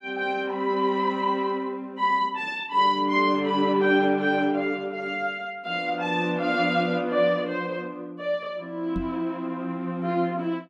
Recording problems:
microphone thump; at 9 s; peak -3 dB vs average level

